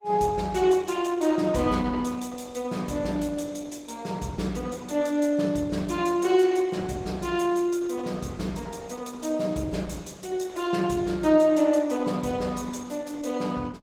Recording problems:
codec artefacts; Opus, log-spectral distance 4 dB

